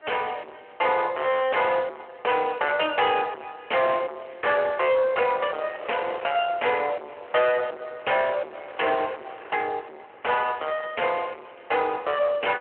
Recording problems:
phone line; 320 Hz to 3.1 kHz, Speex
distortion; soft clipping, signal-to-distortion ratio 6 dB
wind on the microphone; below 1.8 kHz, SNR 18 dB

